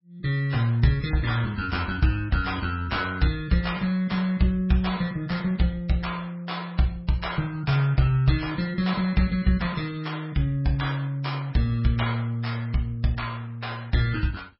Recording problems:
codec artefacts; MP3, log-spectral distance 3 dB, nothing above 5.3 kHz

